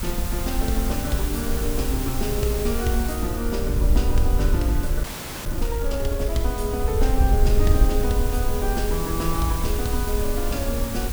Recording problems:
hiss; slope -2 dB per octave, SNR 6 dB
rumble; below 58 Hz, SNR 10 dB
wind on the microphone; below 66 Hz, SNR 0 dB
audio freezing; at 5 s

